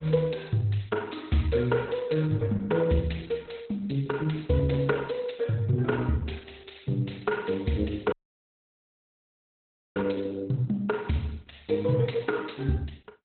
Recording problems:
lossy codec; Opus, log-spectral distance 7 dB, nothing above 4.1 kHz
dropout; at 8 s for 2 s

